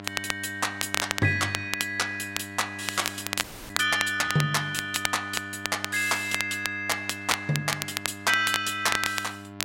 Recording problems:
hum; 50 Hz, harmonics up to 2.1 kHz, SNR 15 dB
crackling; vinyl, SNR 5 dB
audio freezing; at 3.5 s

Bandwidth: 16 kHz